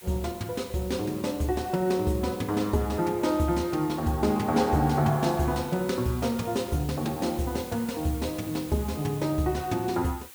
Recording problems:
hiss; SNR 17 dB

